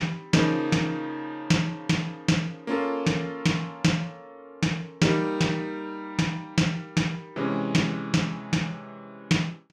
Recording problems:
none

